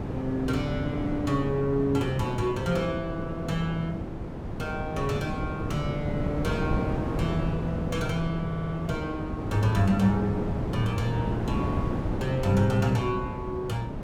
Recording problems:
wind noise; below 350 Hz, SNR 3 dB
audio stuttering; at 8.5 s

